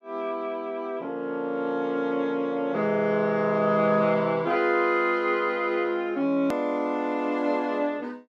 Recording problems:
hard cut with a click; at 6.5 s

